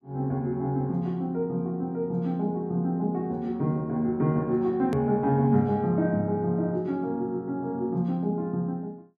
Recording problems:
edit click; at 5 s

